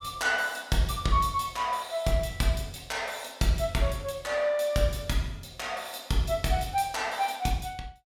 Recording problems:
none

